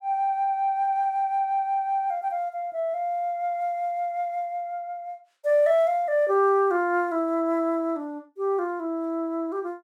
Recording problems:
none

